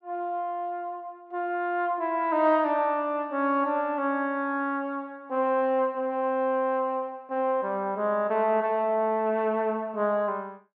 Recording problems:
none

